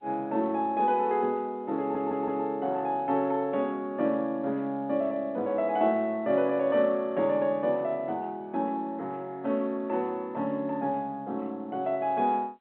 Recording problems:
telephone audio; 170 Hz to 3.3 kHz, G.711
audio stuttering; at 2 s

